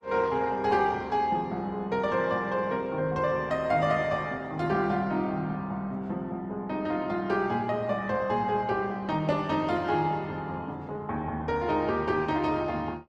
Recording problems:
lossy codec; Opus, log-spectral distance 2 dB, nothing above 11.6 kHz

